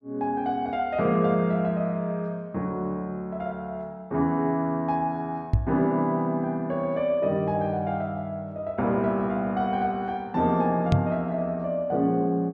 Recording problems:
microphone bump; at 5.5 s and at 11 s; peak +8 dB vs average level

